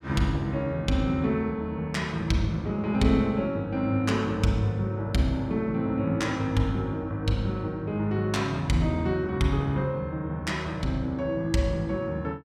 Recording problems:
none

